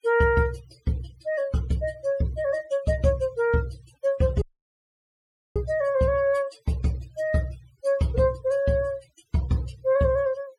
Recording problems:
denoising artefacts; signal-to-artefact ratio 24 dB
audio cutting out; at 4.5 s for 1 s

